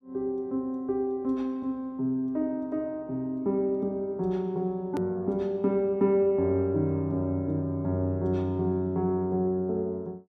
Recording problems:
hard cut with a click; at 5 s

